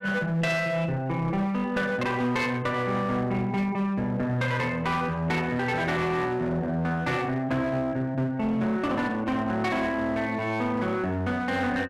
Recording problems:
distorted audio; hard clipping, uneven, signal-to-distortion ratio 10 dB

